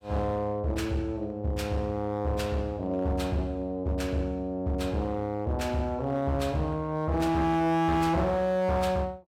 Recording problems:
distorted audio; hard clipping, uneven, signal-to-distortion ratio 10 dB

